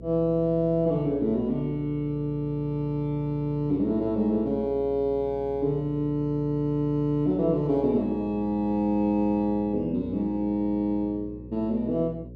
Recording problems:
hum; 60 Hz, harmonics up to 540 Hz, SNR 16 dB

